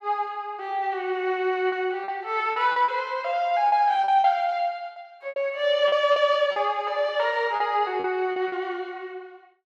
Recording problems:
lost packets; 8% of the sound replaced, filled with repeated pitch periods

